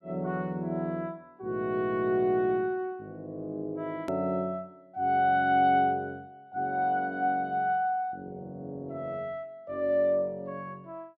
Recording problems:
hard cut with a click; at 4 s

